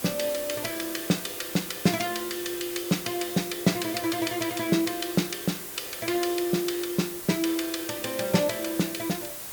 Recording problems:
background hiss; slope -1 dB per octave, SNR 7 dB

